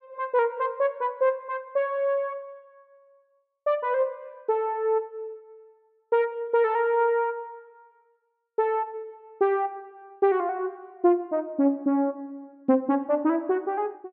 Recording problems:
none

